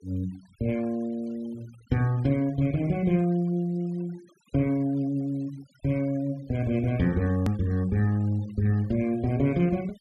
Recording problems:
noise reduction artefacts; signal-to-artefact ratio 26 dB
hard cut with a click; at 7.5 s

